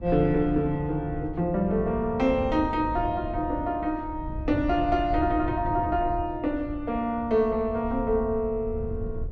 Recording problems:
wind on the microphone; below 110 Hz, SNR 10 dB

